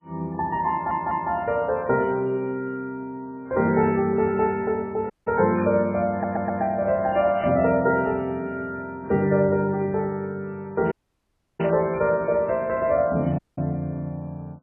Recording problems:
lossy compression; MP3, log-spectral distance 2 dB, nothing above 2.8 kHz
audio stuttering; at 0.5 s and at 6 s
dropout; at 5 s, at 11 s for 0.5 s and at 13 s
static burst; at 5.5 s, at 7.5 s and at 12 s; peak -8 dB vs average level

